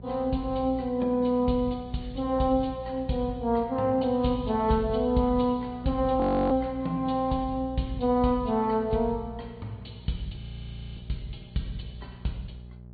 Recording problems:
treble missing; nothing above 4.6 kHz
lossy compression; AAC, log-spectral distance 2 dB
hum; 60 Hz, harmonics up to 600 Hz, SNR 18 dB
frozen audio; at 6 s and at 10 s for 0.5 s

